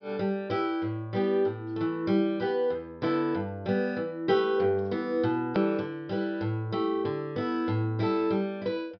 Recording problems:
treble cut off; nothing above 5.5 kHz
click at an edit; at 5.5 s

